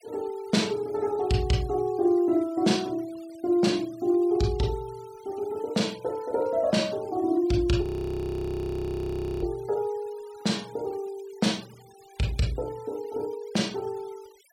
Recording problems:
noise reduction artefacts; signal-to-artefact ratio 23 dB
audio freezing; at 8 s for 1.5 s

